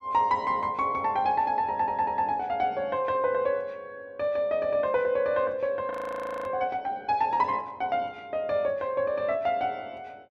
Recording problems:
audio stuttering; at 1.5 s
audio freezing; at 6 s for 0.5 s

